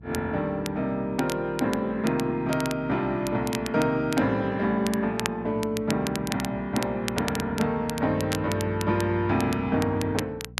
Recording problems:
hum; 60 Hz, harmonics up to 480 Hz, SNR 19 dB
crackle; vinyl, SNR 12 dB

